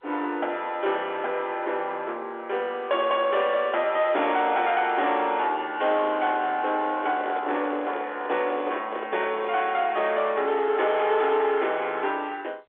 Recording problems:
telephone audio; 280 Hz to 3.6 kHz, G.711
distorted audio; soft clipping, signal-to-distortion ratio 11 dB
handling noise; from 7 to 9.5 s; peak -4 dB vs average level

